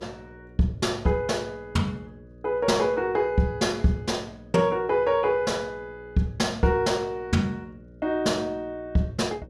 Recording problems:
electrical hum; 60 Hz, harmonics up to 600 Hz, SNR 23 dB

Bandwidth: 15 kHz